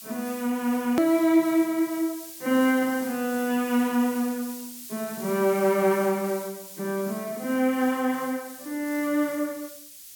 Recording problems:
hiss; SNR 14 dB
edit click; at 1 s

